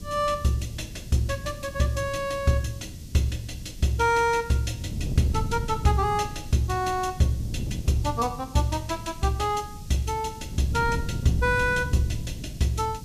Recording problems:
hiss; slope +6 dB per octave, SNR 22 dB
wind on the microphone; below 170 Hz, SNR 10 dB

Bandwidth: 14.5 kHz